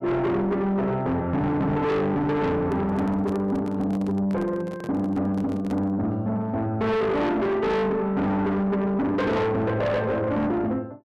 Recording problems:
distortion; soft clipping, signal-to-distortion ratio 7 dB
handling noise; from 2.5 to 6 s; peak -8 dB vs average level

